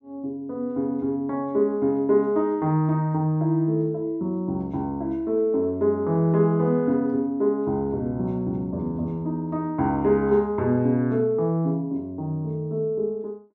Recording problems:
none

